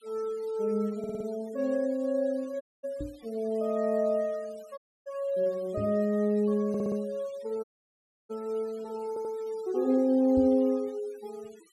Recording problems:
denoising artefacts; signal-to-artefact ratio 27 dB
audio stuttering; at 1 s, at 6.5 s and at 9 s
audio cutting out; at 2.5 s, at 5 s and at 7.5 s for 0.5 s
knock on the microphone; at 3 s, at 6 s and at 10 s; peak -1 dB vs average level

